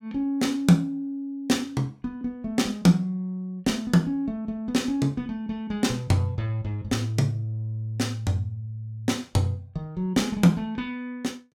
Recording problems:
none

